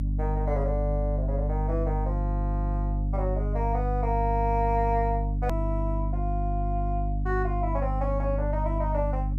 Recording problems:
hum; 50 Hz, harmonics up to 300 Hz, SNR -2 dB
edit click; at 5.5 s

